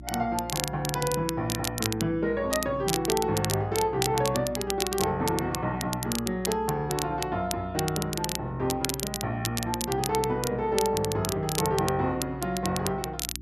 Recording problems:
hum; 60 Hz, harmonics up to 360 Hz, SNR 15 dB
crackling; vinyl, SNR 5 dB

